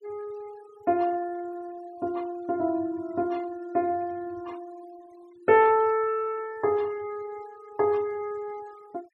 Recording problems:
denoising artefacts; signal-to-artefact ratio 27 dB

